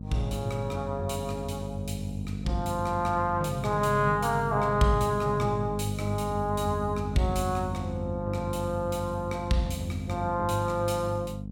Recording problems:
hum; 50 Hz, harmonics up to 550 Hz, SNR 7 dB

